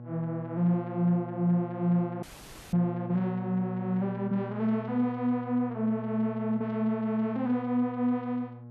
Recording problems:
electrical hum; 60 Hz, harmonics up to 1.1 kHz, SNR 12 dB
dropout; at 2 s for 0.5 s

